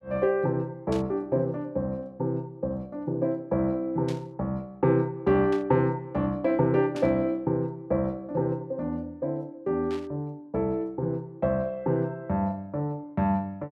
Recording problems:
burst of static; 5 times, first at 1 s; peak -10 dB vs average level

